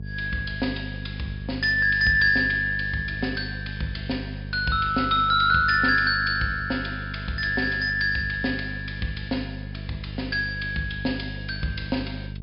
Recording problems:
low-pass filter; nothing above 5.5 kHz
hum; 50 Hz, harmonics up to 450 Hz, SNR 11 dB

